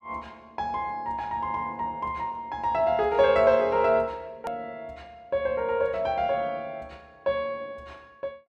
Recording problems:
edit click; at 4.5 s

